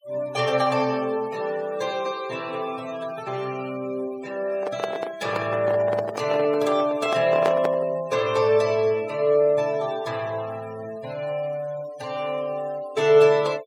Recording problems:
noise reduction artefacts; signal-to-artefact ratio 19 dB
handling noise; from 4.5 to 8 s; peak +2 dB vs average level

